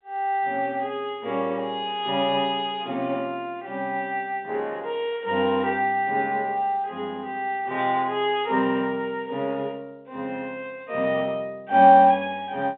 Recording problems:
telephone audio; 220 Hz to 3.7 kHz, G.711

